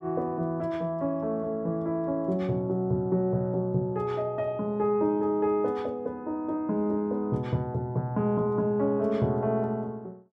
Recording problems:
none

